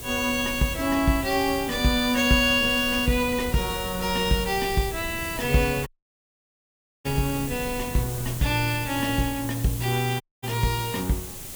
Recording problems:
hiss; SNR 11 dB
wind on the microphone; below 170 Hz, SNR 16 dB
dropout; at 6 s for 1 s and at 10 s

